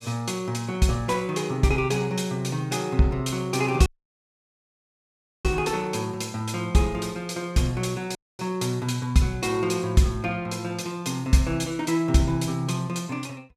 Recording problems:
dropout; at 4 s for 1.5 s and at 8 s

